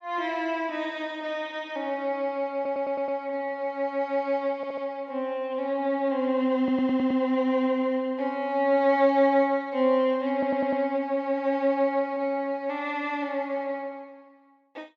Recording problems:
audio stuttering; 4 times, first at 2.5 s

